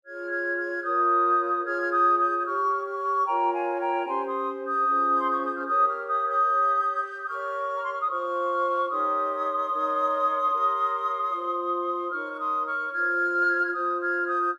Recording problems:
none

